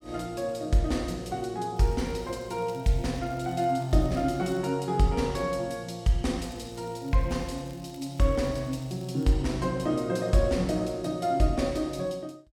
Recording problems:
crackling; from 2 to 4.5 s and from 6.5 to 9.5 s; loose cable, SNR 28 dB

